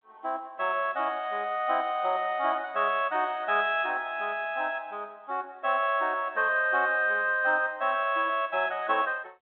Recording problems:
telephone audio; 220 Hz to 3.7 kHz, G.726

